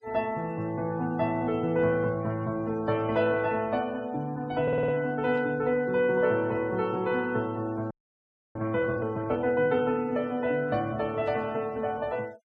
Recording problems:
denoising artefacts; signal-to-artefact ratio 25 dB
stutter; at 4.5 s
static burst; at 5.5 s and at 11 s; peak -20 dB vs average level
audio freezing; at 8 s for 0.5 s

